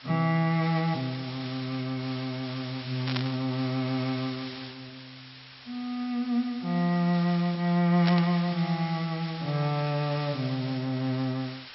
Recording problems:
low-pass filter; nothing above 5.6 kHz
hiss; SNR 13 dB
burst of static; at 3 s and at 8 s; peak +1 dB vs average level

